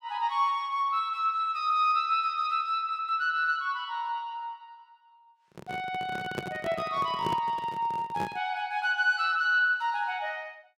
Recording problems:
microphone handling noise; from 5.5 to 8.5 s; peak -1 dB vs average level

